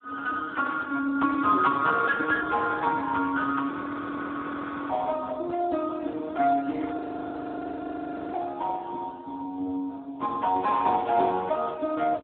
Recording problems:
phone line; 240 Hz to 2.1 kHz, Speex
frozen audio; at 3.5 s for 1 s and at 7 s for 1.5 s

